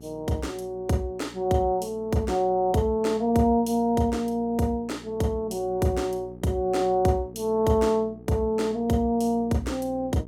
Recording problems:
hum; 60 Hz, harmonics up to 840 Hz, SNR 20 dB

